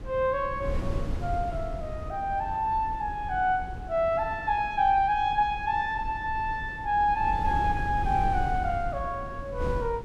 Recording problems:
wind on the microphone; below 140 Hz, SNR 9 dB

